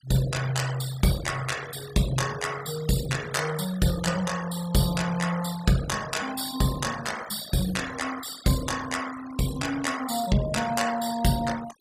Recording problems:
noise reduction artefacts; signal-to-artefact ratio 13 dB

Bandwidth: 15 kHz